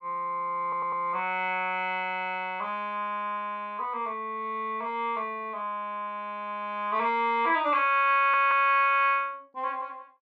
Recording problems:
audio stuttering; at 0.5 s and at 8 s

